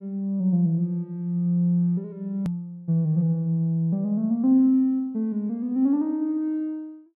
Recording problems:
edit click; at 2.5 s

